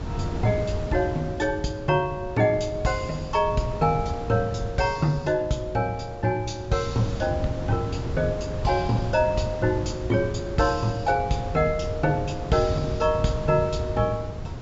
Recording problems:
treble cut off; nothing above 8 kHz
wind on the microphone; below 220 Hz, SNR 7 dB

